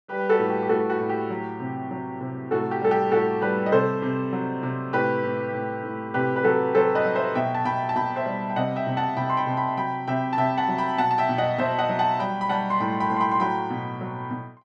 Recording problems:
none

